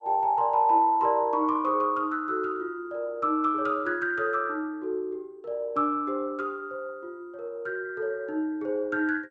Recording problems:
lossy compression; MP2, log-spectral distance 2 dB

